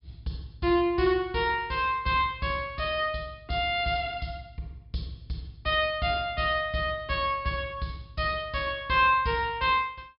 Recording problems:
treble cut off; nothing above 5.5 kHz

